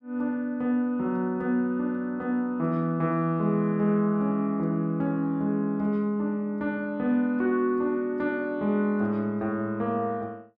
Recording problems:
none

